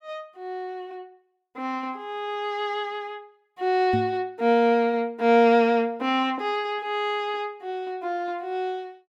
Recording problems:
knock on the microphone; at 4 s; peak 0 dB vs average level

